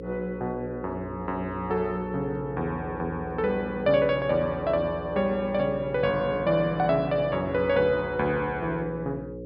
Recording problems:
low-pass filter; nothing above 5.5 kHz
hum; 60 Hz, harmonics up to 540 Hz, SNR 10 dB

